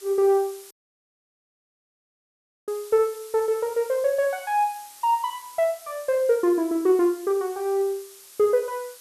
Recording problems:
background hiss; slope +2 dB per octave, SNR 20 dB
dropout; at 0.5 s for 2 s

